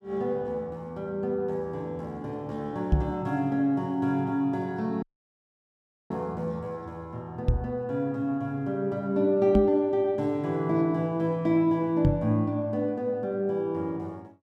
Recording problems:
knock on the microphone; 4 times, first at 3 s; peak +8 dB vs average level
audio cutting out; at 5 s for 1 s

